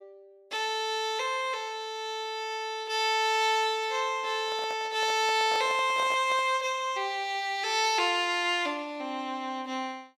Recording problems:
microphone handling noise; from 4.5 to 6.5 s; peak -6 dB vs average level

